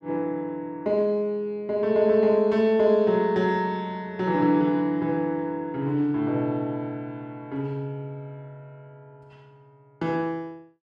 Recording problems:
none

